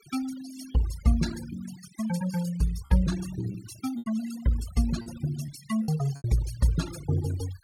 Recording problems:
denoising artefacts; signal-to-artefact ratio 14 dB
lost packets; 5% of the sound replaced, filled with repeated pitch periods

